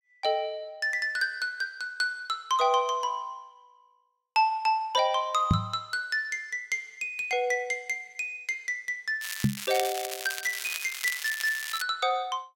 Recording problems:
knock on the microphone; at 5.5 s and at 9.5 s; peak +9 dB vs average level
crackle; from 9 to 12 s; loose cable, SNR 6 dB

